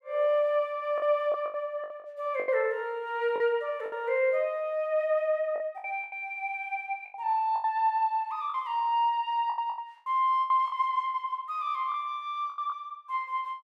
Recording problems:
packet loss; 9% of the sound replaced, filled with the last packet

